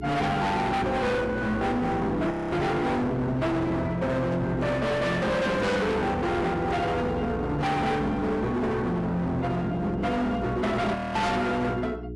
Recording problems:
lossy codec; AAC, log-spectral distance 2 dB, nothing above 11.3 kHz
distorted audio; hard clipping, signal-to-distortion ratio 6 dB
electrical hum; 60 Hz, harmonics up to 780 Hz, SNR 11 dB
audio freezing; at 2.5 s and at 11 s

